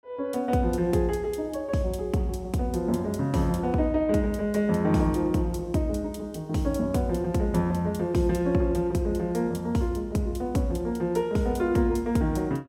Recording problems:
none

